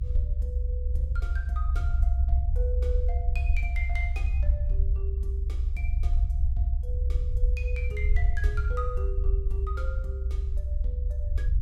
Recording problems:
low-frequency rumble; below 66 Hz, SNR -12 dB

